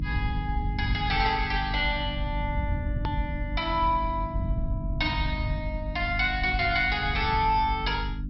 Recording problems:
treble cut off; nothing above 5.5 kHz
electrical hum; 50 Hz, harmonics up to 300 Hz, SNR 10 dB
low-frequency rumble; below 100 Hz, SNR 5 dB
edit click; at 3 s

